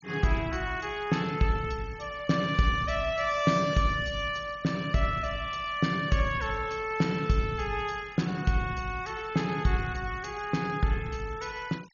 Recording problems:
treble cut off; nothing above 7 kHz
noise reduction artefacts; signal-to-artefact ratio 21 dB

